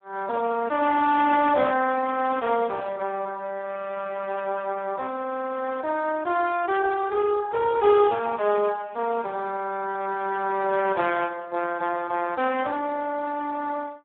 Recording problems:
phone line; 240 Hz to 2.6 kHz, Speex

